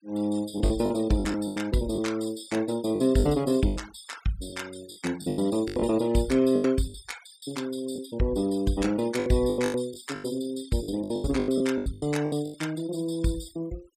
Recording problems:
noise reduction artefacts; signal-to-artefact ratio 19 dB
lost packets; 13% of the sound replaced, filled with the last packet

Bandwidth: 15 kHz